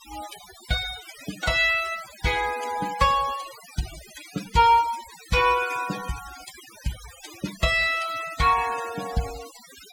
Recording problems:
noise reduction artefacts; signal-to-artefact ratio 15 dB

